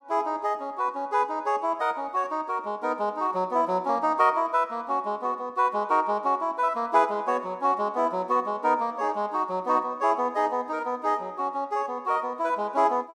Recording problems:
none

